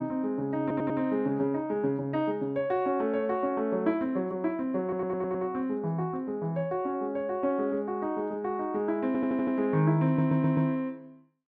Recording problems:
stutter; 4 times, first at 0.5 s

